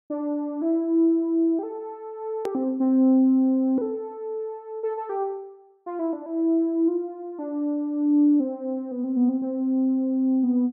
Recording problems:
click at an edit; at 2.5 s

